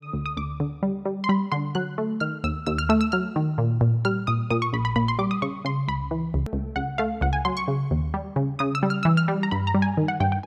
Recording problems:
edit click; at 6.5 s

